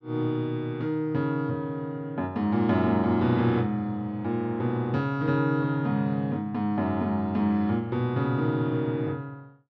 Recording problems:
none

